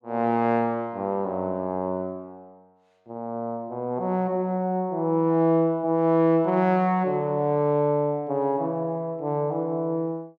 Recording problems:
none

